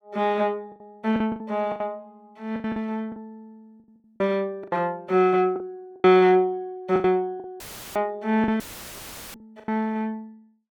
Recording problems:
lost packets; 11% of the sound replaced, filled with the last packet
dropout; at 7.5 s and at 8.5 s for 0.5 s; filled with static

